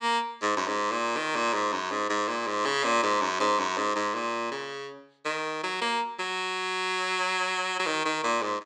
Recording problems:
none

